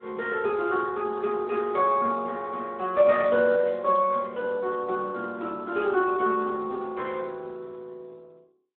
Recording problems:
telephone audio; 260 Hz to 2.9 kHz, Speex

